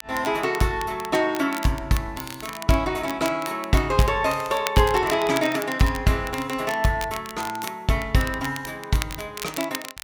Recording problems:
crackle; vinyl, SNR 13 dB

